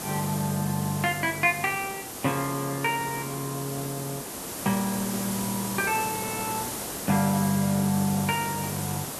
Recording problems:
hiss; SNR 5 dB

